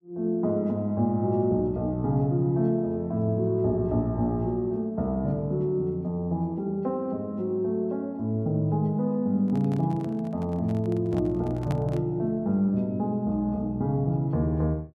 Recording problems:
handling noise; from 9.5 to 12 s; peak -6 dB vs average level

